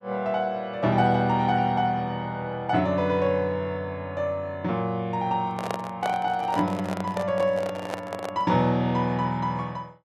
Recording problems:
handling noise; from 5.5 to 8.5 s; peak 0 dB vs average level

